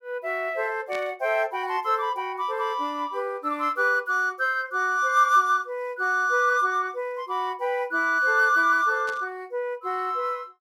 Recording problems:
burst of static; at 1 s and at 9 s; peak -12 dB vs average level

